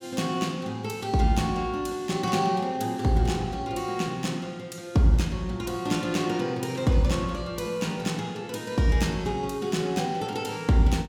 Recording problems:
none

